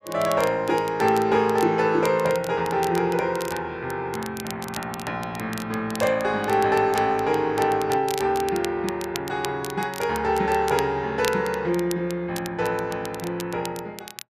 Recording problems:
crackling; vinyl, SNR 15 dB

